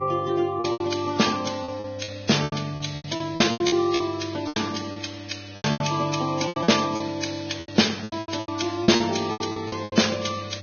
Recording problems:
lossy compression; Vorbis, log-spectral distance 6 dB, nothing above 6.5 kHz
mains hum; 50 Hz, harmonics up to 500 Hz, SNR 18 dB
packet loss; 17% of the sound replaced, filled with repeated pitch periods

